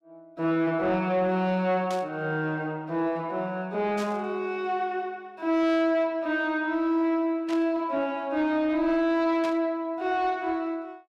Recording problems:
distorted audio; soft clipping, signal-to-distortion ratio 12 dB
static burst; 4 times, first at 2 s; peak -8 dB vs average level

